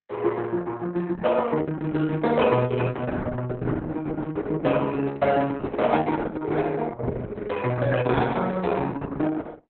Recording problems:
lossy codec; Opus, log-spectral distance 4 dB, nothing above 3.6 kHz

